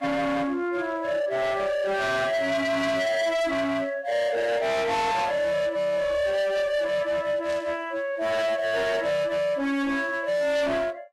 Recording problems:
lossy compression; Vorbis, log-spectral distance 2 dB, nothing above 12.3 kHz
distorted audio; hard clipping, signal-to-distortion ratio 7 dB
static burst; at 7.5 s; peak -13 dB vs average level

